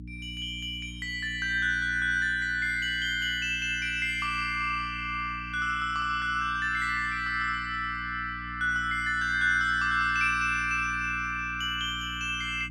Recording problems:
hum; 60 Hz, harmonics up to 300 Hz, SNR 16 dB

